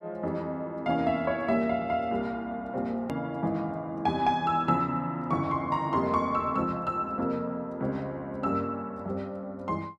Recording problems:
edit click; at 3 s

